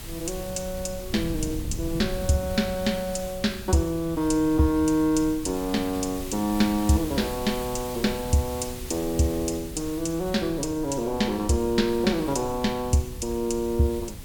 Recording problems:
background hiss; slope -1 dB per octave, SNR 15 dB
wind on the microphone; below 130 Hz, SNR 14 dB

